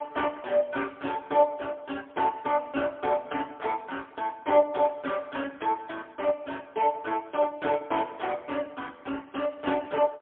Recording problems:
telephone audio; 240 Hz to 3.3 kHz, AMR-NB, then MP3

